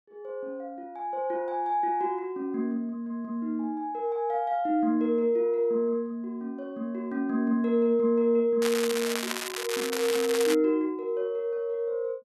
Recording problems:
crackling; from 8.5 to 11 s; loose cable, SNR 5 dB

